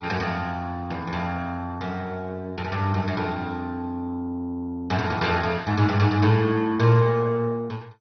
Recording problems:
lossy codec; MP2, log-spectral distance 3 dB, nothing above 6 kHz

